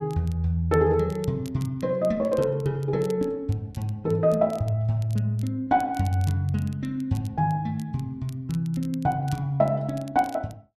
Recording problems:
crackling; vinyl, SNR 25 dB

